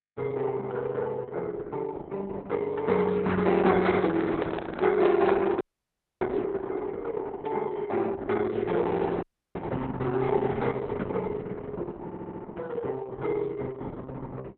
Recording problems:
codec artefacts; Opus, log-spectral distance 3 dB, nothing above 4 kHz
handling noise; from 3.5 to 6.5 s; peak +3 dB vs average level
audio freezing; at 5.5 s for 0.5 s and at 9 s
stutter; at 12 s

